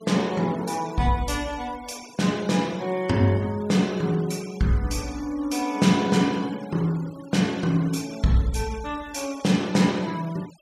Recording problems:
noise reduction artefacts; signal-to-artefact ratio 21 dB

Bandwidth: 15.5 kHz